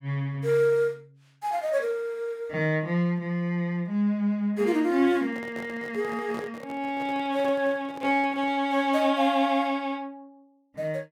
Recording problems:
handling noise; from 5 to 8.5 s; peak -8 dB vs average level

